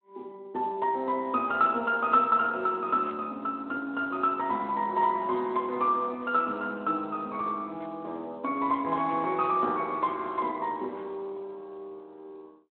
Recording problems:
telephone audio; 220 Hz to 3.8 kHz, Speex
static burst; at 1.5 s, at 3 s and at 9 s; peak -15 dB vs average level

